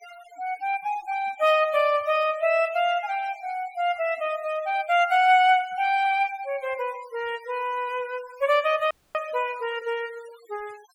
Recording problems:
denoising artefacts; signal-to-artefact ratio 23 dB
frozen audio; at 9 s

